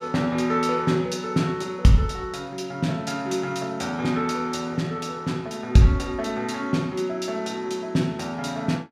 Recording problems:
none

